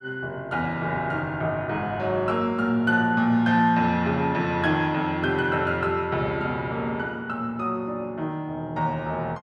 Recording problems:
none

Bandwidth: 12.5 kHz